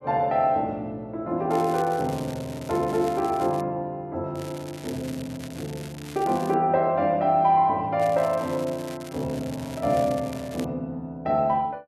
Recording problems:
crackling; from 1.5 to 3.5 s, from 4.5 to 6.5 s and from 8 to 11 s; loose cable, SNR 19 dB

